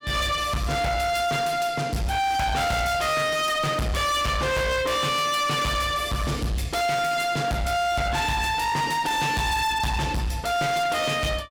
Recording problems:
distortion; hard clipping, signal-to-distortion ratio 5 dB

